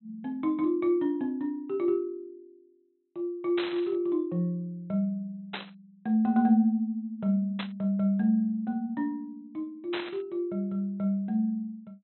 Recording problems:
treble missing; nothing above 4.1 kHz
burst of static; 4 times, first at 3.5 s; peak -2 dB vs average level

